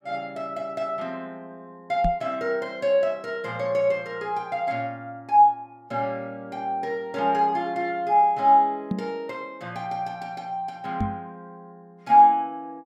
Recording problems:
microphone bump; at 2 s, at 9 s and at 11 s; peak +1 dB vs average level

